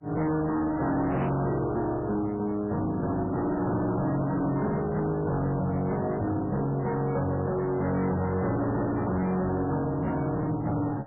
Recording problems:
lossy codec; MP3, log-spectral distance 3 dB
distorted audio; hard clipping, uneven, signal-to-distortion ratio 6 dB

